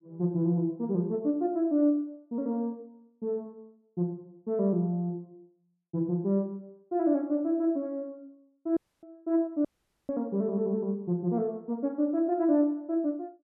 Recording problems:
dropout; at 9 s and at 9.5 s

